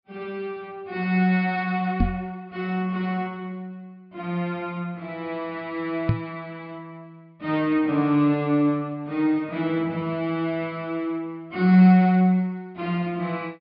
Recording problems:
low-pass filter; nothing above 5.1 kHz
knock on the microphone; at 2 s and at 6 s; peak +6 dB vs average level

